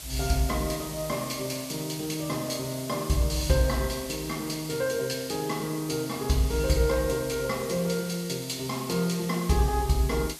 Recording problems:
background hiss; SNR 11 dB

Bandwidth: 14 kHz